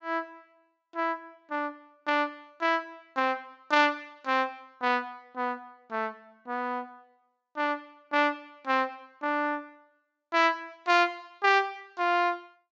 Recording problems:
treble missing; nothing above 8 kHz

